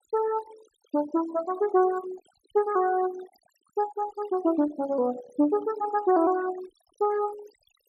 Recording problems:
noise reduction artefacts; signal-to-artefact ratio 19 dB

